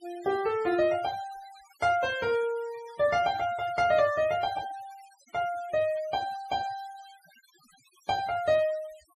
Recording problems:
noise reduction artefacts; signal-to-artefact ratio 20 dB

